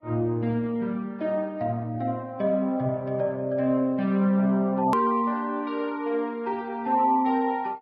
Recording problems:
codec artefacts; Vorbis, log-spectral distance 2 dB, nothing above 13.1 kHz
hard cut with a click; at 5 s

